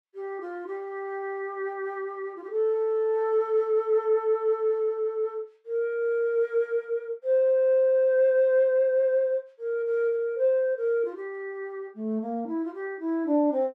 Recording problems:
none

